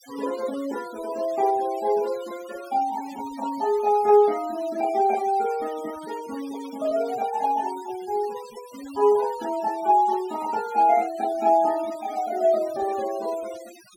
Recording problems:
noise reduction artefacts; signal-to-artefact ratio 20 dB

